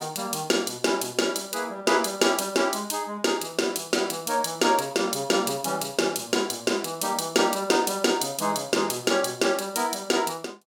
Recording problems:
none

